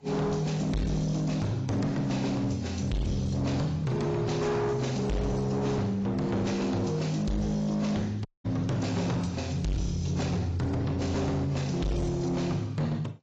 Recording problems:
lossy compression; AAC, log-spectral distance 3 dB, nothing above 7.3 kHz
distortion; hard clipping, uneven, signal-to-distortion ratio 7 dB
audio cutting out; at 8.5 s

